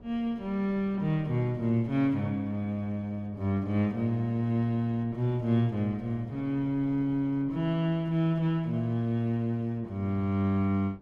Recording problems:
wind noise; below 370 Hz, SNR 24 dB

